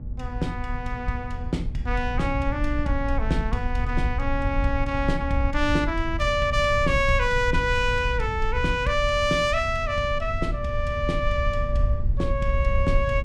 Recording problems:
hum; 60 Hz, harmonics up to 840 Hz, SNR 17 dB
rumble; below 74 Hz, SNR 4 dB

